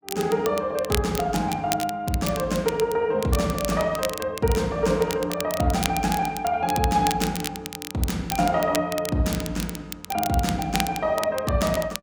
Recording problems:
crackling; vinyl, SNR 9 dB

